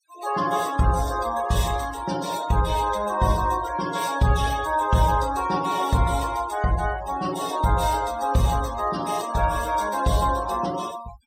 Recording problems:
noise reduction artefacts; signal-to-artefact ratio 16 dB

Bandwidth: 16 kHz